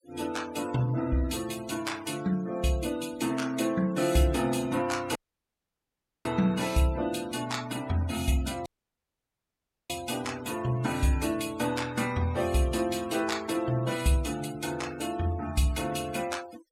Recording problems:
noise reduction artefacts; signal-to-artefact ratio 17 dB
dropout; at 5 s for 1 s and at 8.5 s for 1 s

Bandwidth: 16.5 kHz